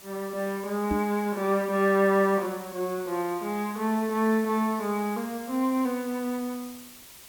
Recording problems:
background hiss; slope 0 dB per octave, SNR 18 dB
knock on the microphone; at 1 s; peak 0 dB vs average level

